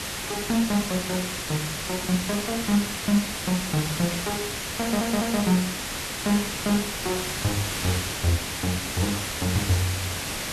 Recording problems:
background hiss; slope -1 dB per octave, SNR 2 dB
stutter; at 5 s

